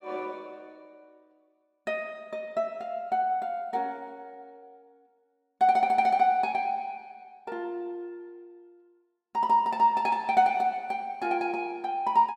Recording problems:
none

